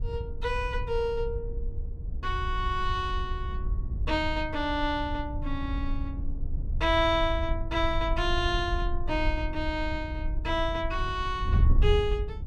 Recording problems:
wind noise; below 72 Hz, SNR 3 dB

